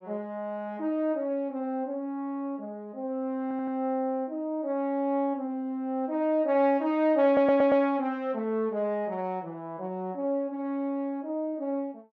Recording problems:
treble cut off; nothing above 7.9 kHz
audio stuttering; at 3.5 s and at 7.5 s

